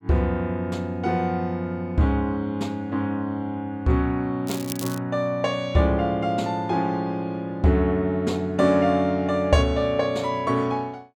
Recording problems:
crackling; at 4.5 s; loose cable, SNR 12 dB

